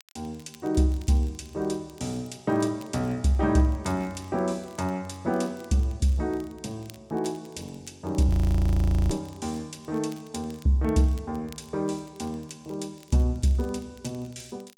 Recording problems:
crackle; vinyl, SNR 28 dB
audio freezing; at 8.5 s for 1 s

